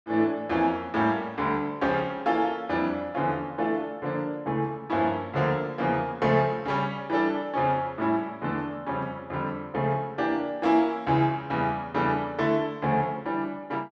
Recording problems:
none

